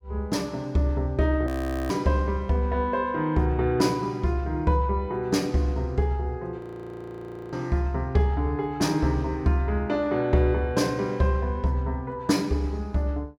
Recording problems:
frozen audio; at 1.5 s and at 6.5 s for 1 s

